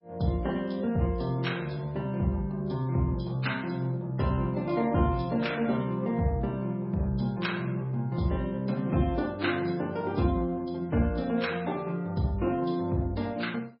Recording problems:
lossy codec; MP3, log-spectral distance 2 dB, nothing above 5.3 kHz

